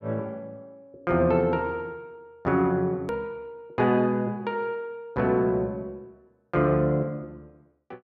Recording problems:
edit click; at 3 s

